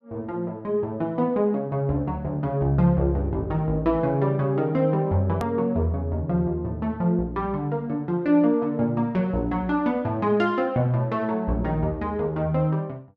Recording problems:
click at an edit; at 5.5 s

